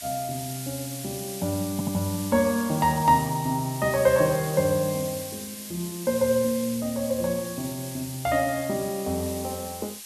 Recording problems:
background hiss; slope +4 dB per octave, SNR 10 dB
stutter; at 1.5 s

